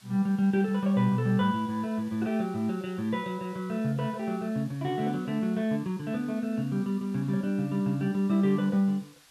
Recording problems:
background hiss; slope +1 dB per octave, SNR 26 dB

